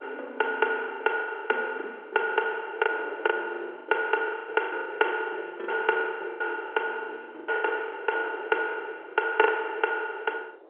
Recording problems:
phone line; 300 Hz to 3.3 kHz, G.711
wind noise; below 680 Hz, SNR 20 dB
packet loss; 17% of the sound replaced, filled with the last packet

